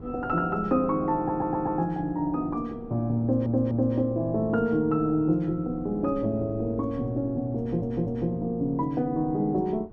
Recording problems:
wind on the microphone; below 260 Hz, SNR 19 dB
audio stuttering; at 1 s, at 3 s and at 7.5 s

